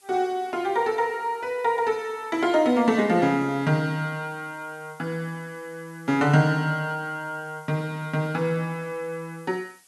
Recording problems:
background hiss; slope +1 dB per octave, SNR 29 dB

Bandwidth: 12 kHz